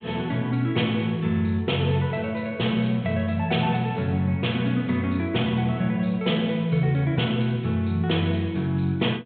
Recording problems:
treble missing; nothing above 4 kHz

